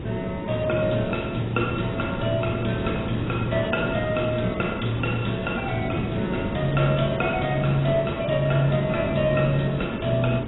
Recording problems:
lossy compression; AAC, log-spectral distance 8 dB, nothing above 3.8 kHz
background hiss; SNR 5 dB

